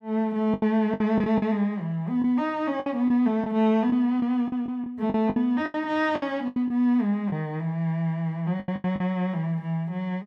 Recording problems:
packet loss; 10% of the sound replaced, filled with the last packet

